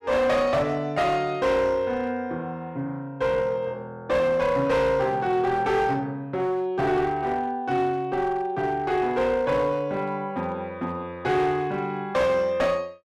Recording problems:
distorted audio; hard clipping, uneven, signal-to-distortion ratio 11 dB

